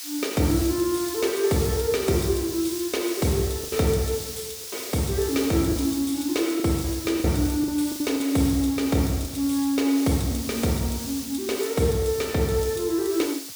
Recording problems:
background hiss; slope +4 dB per octave, SNR 9 dB
packet loss; 4% of the sound replaced, filled with the last packet

